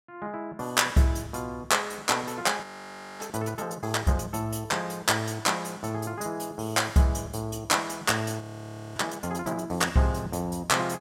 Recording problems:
frozen audio; at 2.5 s for 0.5 s and at 8.5 s for 0.5 s

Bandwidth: 16 kHz